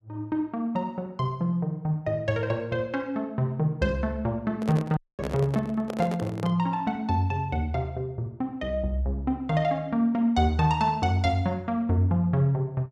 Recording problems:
microphone handling noise; from 4.5 to 6.5 s; peak -3 dB vs average level
audio cutting out; at 5 s

